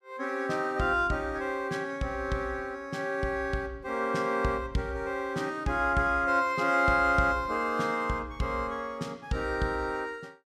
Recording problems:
none

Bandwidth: 15 kHz